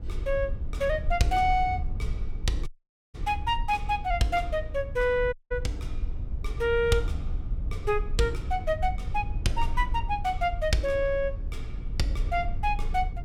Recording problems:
low-frequency rumble; below 66 Hz, SNR 6 dB
audio cutting out; at 2.5 s and at 5.5 s

